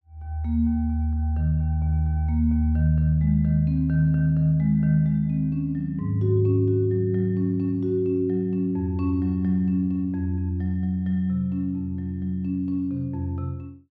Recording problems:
none

